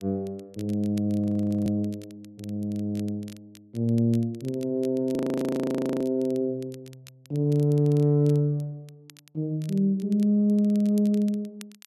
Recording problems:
crackle; vinyl, SNR 27 dB
frozen audio; at 1 s and at 5 s for 1 s

